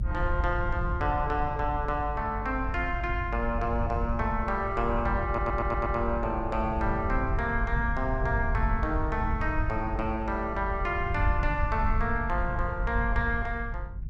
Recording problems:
rumble; below 88 Hz, SNR 3 dB
audio stuttering; at 5.5 s

